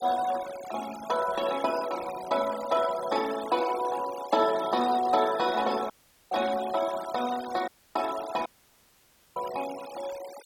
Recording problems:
noise reduction artefacts; signal-to-artefact ratio 15 dB
dropout; at 6 s, at 7.5 s and at 8.5 s for 1 s

